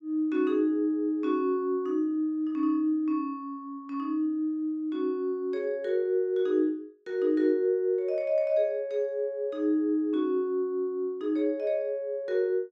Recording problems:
none

